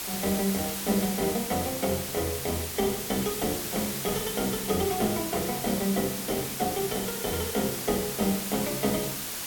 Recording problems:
hiss; slope 0 dB per octave, SNR 3 dB

